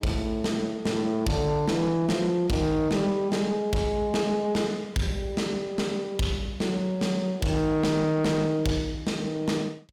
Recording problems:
distorted audio; soft clipping, signal-to-distortion ratio 11 dB

